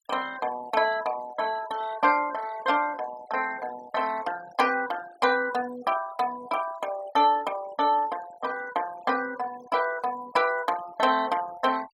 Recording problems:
noise reduction artefacts; signal-to-artefact ratio 17 dB

